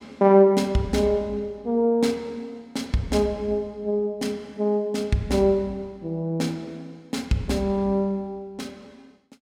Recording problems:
none

